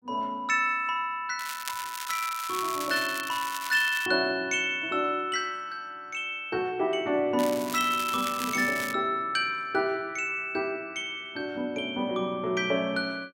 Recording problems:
crackle; from 1.5 to 4 s and from 7.5 to 9 s; loose cable, SNR 9 dB

